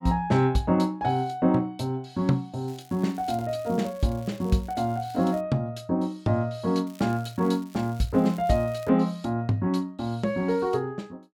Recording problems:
crackling; from 2.5 to 5.5 s and from 7 to 9 s; loose cable, SNR 25 dB

